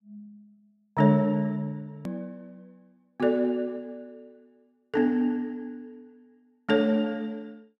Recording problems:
hard cut with a click; at 2 s

